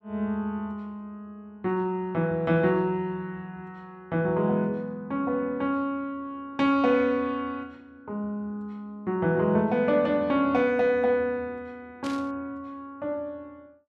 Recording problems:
static burst; at 12 s; peak -9 dB vs average level

